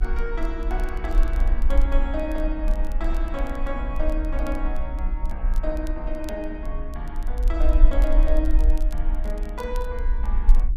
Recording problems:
hum; 60 Hz, harmonics up to 360 Hz, SNR 12 dB
rumble; below 42 Hz, strongest tone 24 Hz, SNR -6 dB
crackle; vinyl, SNR 21 dB

